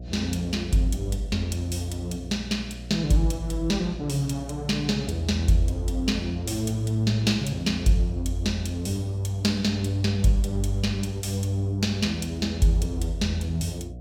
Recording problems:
hum; 60 Hz, harmonics up to 720 Hz, SNR 14 dB

